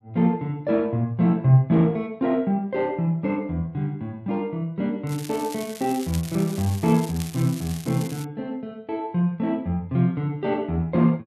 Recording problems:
crackling; from 5 to 8.5 s; loose cable, SNR 15 dB

